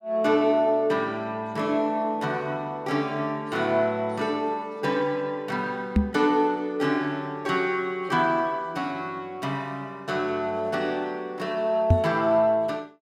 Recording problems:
microphone bump; at 6 s and at 12 s; peak +9 dB vs average level

